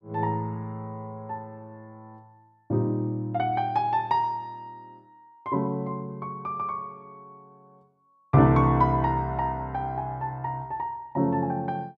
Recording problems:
none

